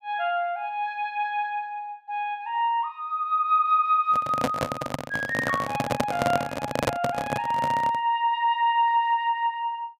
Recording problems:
microphone handling noise; from 4 to 8 s; peak +5 dB vs average level

